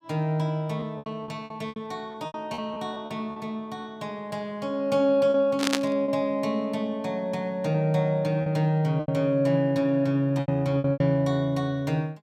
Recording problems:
packet loss; 8% of the sound replaced, filled with repeated pitch periods
burst of static; at 5.5 s; peak +6 dB vs average level

